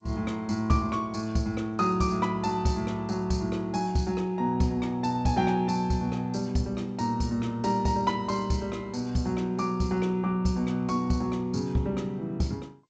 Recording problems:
lossy compression; G.722, log-spectral distance 2 dB, nothing above 7.3 kHz

